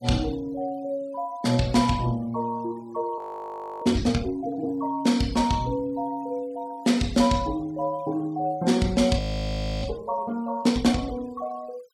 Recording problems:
noise reduction artefacts; signal-to-artefact ratio 24 dB
frozen audio; at 3 s for 0.5 s and at 9 s for 0.5 s

